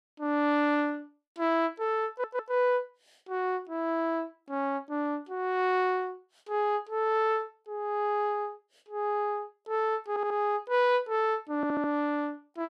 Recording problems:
audio stuttering; at 2 s, at 10 s and at 12 s

